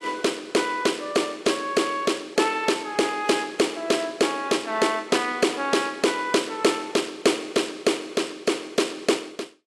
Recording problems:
lossy codec; AAC, log-spectral distance 3 dB, nothing above 11.3 kHz

